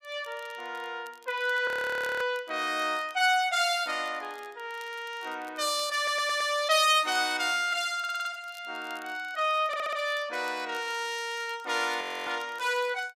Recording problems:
crackle; vinyl, SNR 26 dB
frozen audio; at 1.5 s for 0.5 s and at 12 s
stutter; at 6 s, at 8 s and at 9.5 s

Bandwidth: 15 kHz